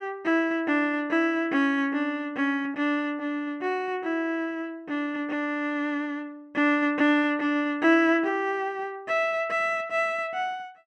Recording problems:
none

